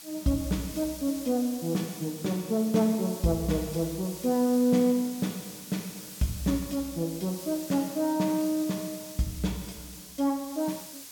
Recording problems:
hiss; SNR 13 dB

